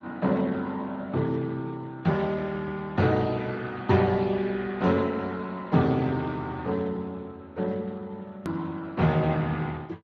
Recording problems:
lossy codec; Speex, log-spectral distance 3 dB, nothing above 13.1 kHz
hard cut with a click; at 8.5 s

